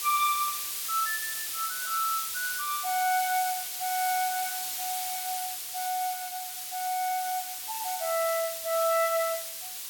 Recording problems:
background hiss; slope +3 dB per octave, SNR 2 dB

